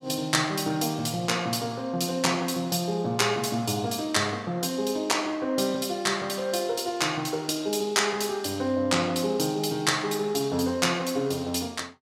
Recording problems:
none

